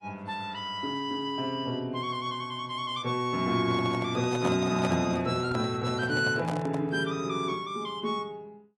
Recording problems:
codec artefacts; AAC, log-spectral distance 2 dB
microphone handling noise; from 3.5 to 7 s; peak +1 dB vs average level

